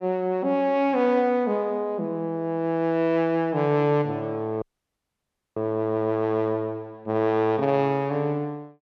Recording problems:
dropout; at 4.5 s for 1 s

